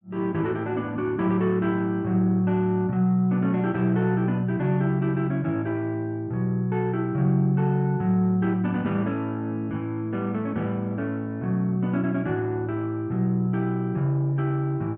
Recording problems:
none

